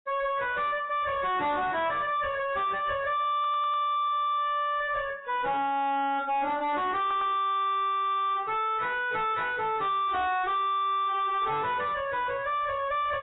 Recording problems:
codec artefacts; AAC, log-spectral distance 2 dB, nothing above 3.6 kHz
distorted audio; soft clipping, signal-to-distortion ratio 6 dB
stutter; at 3.5 s and at 7 s

